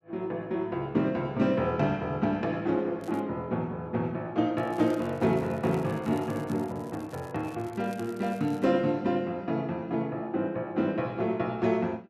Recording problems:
crackling; at 3 s and from 4.5 to 8.5 s; loose cable, SNR 25 dB

